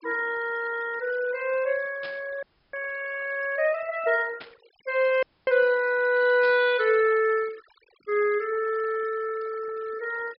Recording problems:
low-pass filter; nothing above 5.3 kHz
denoising artefacts; signal-to-artefact ratio 21 dB
static burst; at 2 s, at 4.5 s and at 6.5 s; peak -12 dB vs average level
audio cutting out; at 2.5 s and at 5 s

